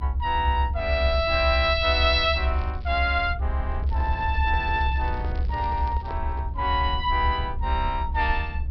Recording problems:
low-pass filter; nothing above 5.5 kHz
low-frequency rumble; below 74 Hz, strongest tone 64 Hz, SNR 3 dB
crackle; from 1 to 3 s and from 4 to 6 s; loose cable, SNR 27 dB
handling noise; from 3.5 to 6.5 s; peak -10 dB vs average level

